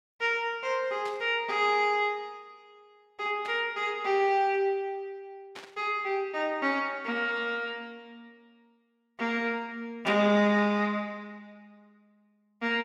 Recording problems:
static burst; 4 times, first at 1 s; peak -11 dB vs average level

